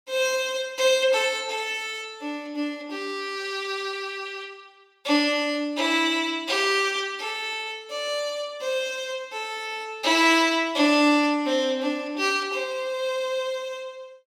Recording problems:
none

